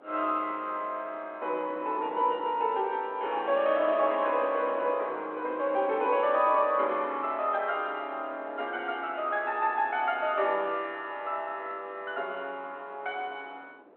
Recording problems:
phone line; 320 Hz to 3.4 kHz, G.726
wind on the microphone; below 780 Hz, SNR 20 dB

